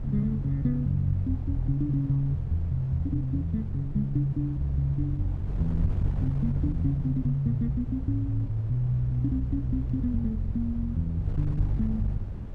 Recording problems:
wind noise; below 110 Hz, SNR 9 dB

